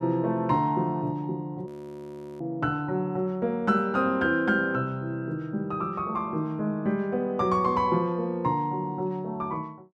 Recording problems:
frozen audio; at 1.5 s for 0.5 s

